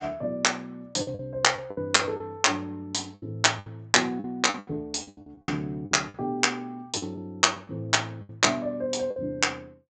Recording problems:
treble cut off; nothing above 8 kHz
lost packets; 11% of the sound replaced, filled with the last packet

